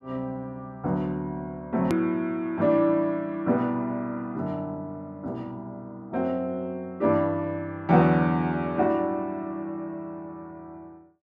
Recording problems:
click at an edit; at 2 s

